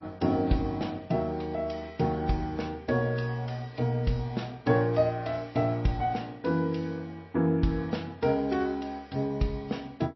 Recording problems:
lossy compression; G.722, then MP3, log-spectral distance 2 dB, nothing above 5.7 kHz

